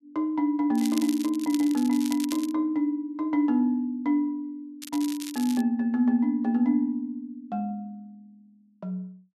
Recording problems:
crackle; from 1 to 2.5 s and at 5 s; loose cable, SNR 14 dB

